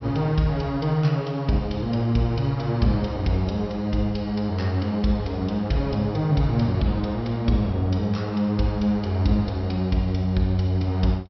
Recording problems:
treble cut off; nothing above 5.7 kHz

